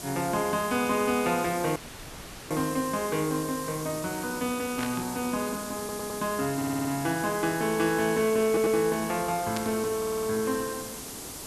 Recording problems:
hiss; SNR 9 dB
audio cutting out; at 2 s for 0.5 s
burst of static; at 5 s and at 9.5 s; peak -4 dB vs average level
audio stuttering; 4 times, first at 6 s

